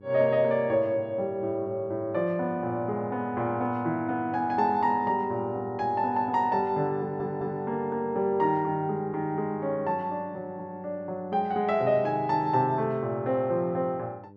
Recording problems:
mains hum; 50 Hz, harmonics up to 1 kHz, SNR 22 dB
stutter; at 7 s

